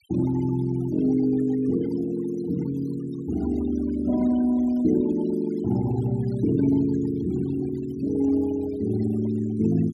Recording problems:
denoising artefacts; signal-to-artefact ratio 19 dB

